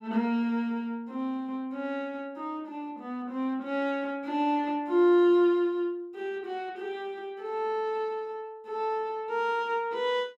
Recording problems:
none

